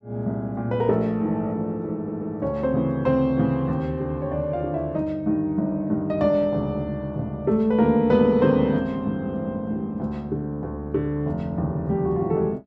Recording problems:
stutter; at 2 s

